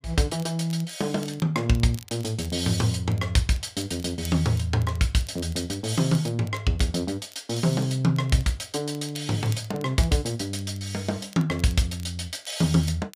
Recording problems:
crackle; vinyl, SNR 23 dB

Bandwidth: 15 kHz